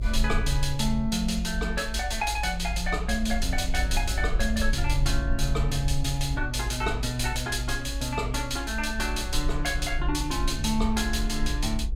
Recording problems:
low-frequency rumble; below 54 Hz, SNR 4 dB

